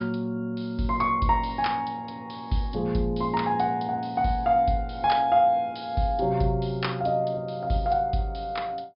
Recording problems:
low-pass filter; nothing above 5.5 kHz

